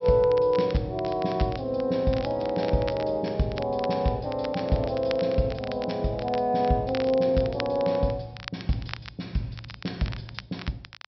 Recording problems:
low-pass filter; nothing above 5.7 kHz
crackling; vinyl, SNR 16 dB

